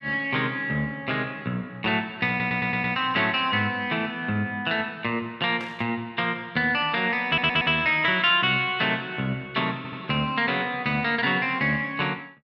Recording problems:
audio stuttering; at 2.5 s, at 7.5 s and at 10 s
static burst; at 5.5 s; peak -11 dB vs average level

